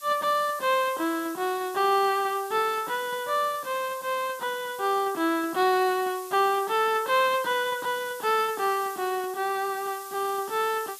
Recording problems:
background hiss; slope +4 dB per octave, SNR 16 dB

